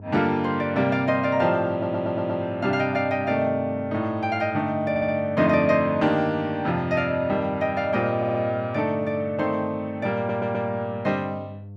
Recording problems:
mains hum; 50 Hz, harmonics up to 500 Hz, SNR 17 dB
audio stuttering; 4 times, first at 1.5 s

